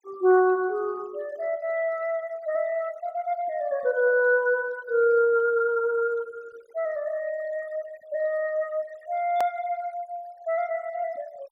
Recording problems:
noise reduction artefacts; signal-to-artefact ratio 26 dB
click at an edit; at 9.5 s

